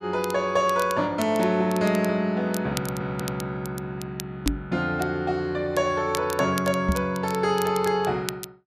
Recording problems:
crackle; vinyl, SNR 15 dB
audio stuttering; at 3 s
microphone bump; at 4.5 s and at 7 s; peak +3 dB vs average level

